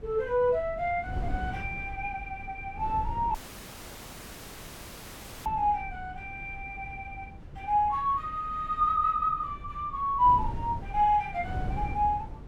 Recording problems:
wind on the microphone; below 140 Hz, SNR 12 dB
audio cutting out; at 3.5 s for 2 s

